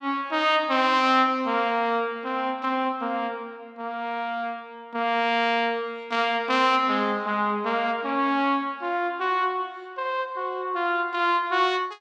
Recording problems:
none

